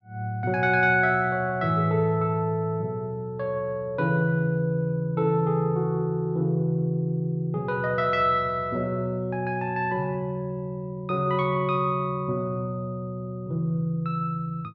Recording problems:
none

